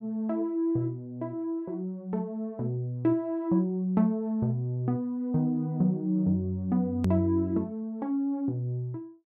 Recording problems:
hard cut with a click; at 7 s

